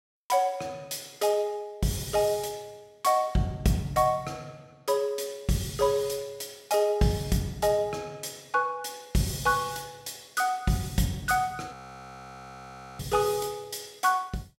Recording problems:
frozen audio; at 12 s for 1.5 s

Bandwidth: 16.5 kHz